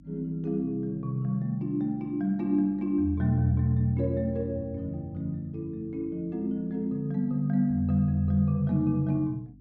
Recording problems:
low-pass filter; nothing above 7.8 kHz
hum; 50 Hz, harmonics up to 300 Hz, SNR 26 dB

